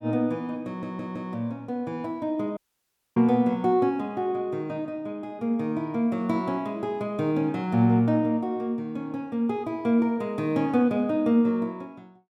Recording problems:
stutter; at 0.5 s
audio cutting out; at 2.5 s for 0.5 s

